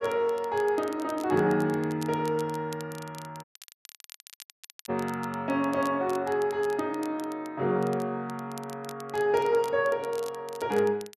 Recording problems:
crackling; vinyl, SNR 20 dB
audio cutting out; at 3.5 s for 1.5 s

